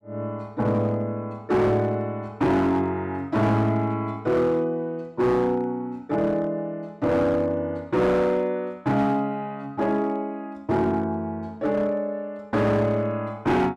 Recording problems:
distorted audio; hard clipping, signal-to-distortion ratio 10 dB

